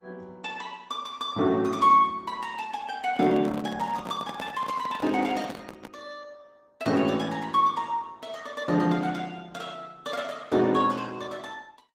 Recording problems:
lossy codec; Vorbis, then Opus, log-spectral distance 3 dB
microphone handling noise; from 3 to 6 s; peak -6 dB vs average level

